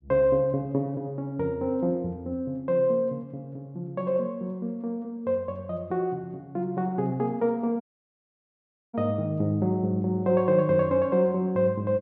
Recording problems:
dropout; at 8 s for 1 s

